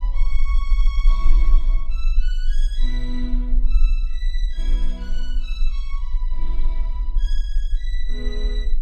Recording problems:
low-frequency rumble; below 36 Hz, strongest tone 18 Hz, SNR -13 dB

